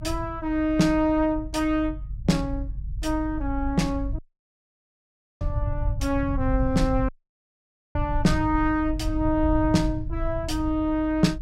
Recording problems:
low-frequency rumble; below 98 Hz, SNR 7 dB
dropout; at 4 s for 1 s and at 7 s for 1 s

